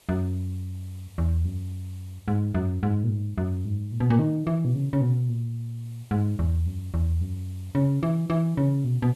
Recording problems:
hiss; SNR 29 dB

